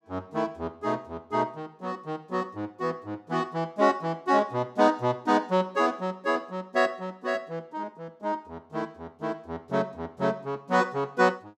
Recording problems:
none

